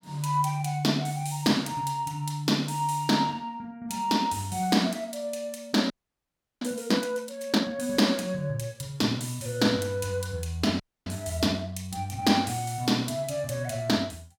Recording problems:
audio freezing; at 6 s for 0.5 s and at 11 s

